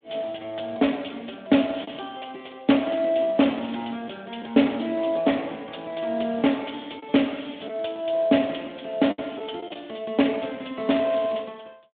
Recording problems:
phone line; 170 Hz to 3.6 kHz, Speex
packet loss; 2% of the sound replaced, filled with the last packet

